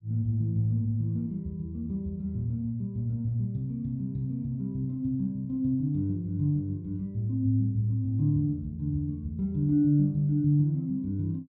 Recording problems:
none

